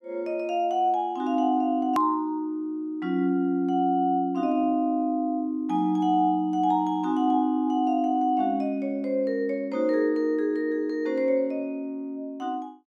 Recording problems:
hard cut with a click; at 2 s

